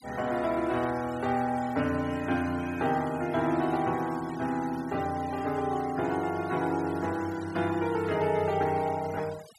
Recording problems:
noise reduction artefacts; signal-to-artefact ratio 18 dB

